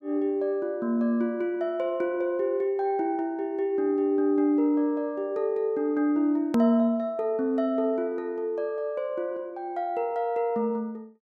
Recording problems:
edit click; at 6.5 s

